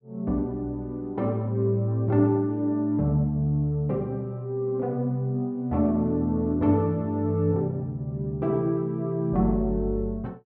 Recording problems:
none

